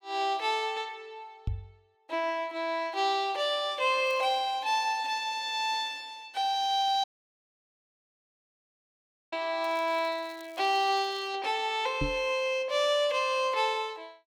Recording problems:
microphone thump; at 1.5 s and at 12 s; peak 0 dB vs average level
crackling; at 4 s and from 9.5 to 11 s; loose cable, SNR 27 dB
dropout; at 7 s for 2.5 s

